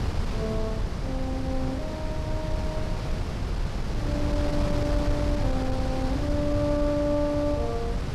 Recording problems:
wind on the microphone; below 180 Hz, SNR -1 dB

